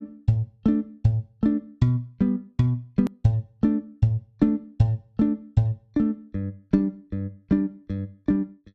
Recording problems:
hard cut with a click; at 3 s

